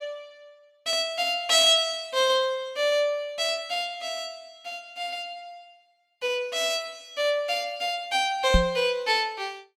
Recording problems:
microphone bump; at 8.5 s; peak +6 dB vs average level

